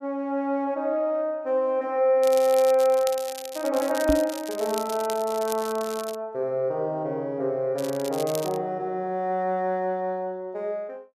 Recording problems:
crackling; from 2 to 6 s and at 8 s; loose cable, SNR 13 dB
microphone thump; at 4 s; peak +5 dB vs average level

